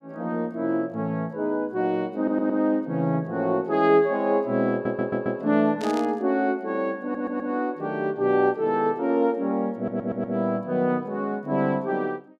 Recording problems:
audio stuttering; 4 times, first at 2 s
static burst; at 6 s; peak -10 dB vs average level

